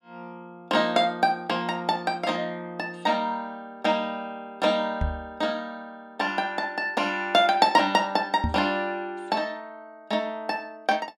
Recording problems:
microphone thump; at 5 s and at 8.5 s; peak +2 dB vs average level

